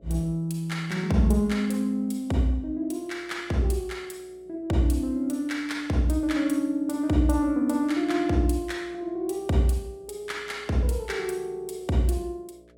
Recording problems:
hum; 60 Hz, harmonics up to 660 Hz, SNR 30 dB

